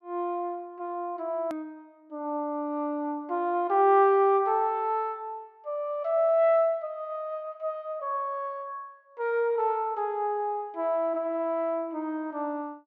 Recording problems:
click at an edit; at 1.5 s

